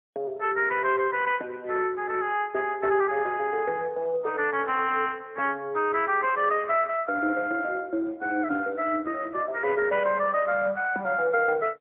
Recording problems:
telephone audio; 240 Hz to 3.1 kHz, AMR-NB, then MP3

